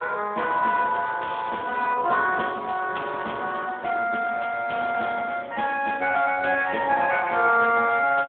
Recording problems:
telephone audio; 300 Hz to 3 kHz, Speex

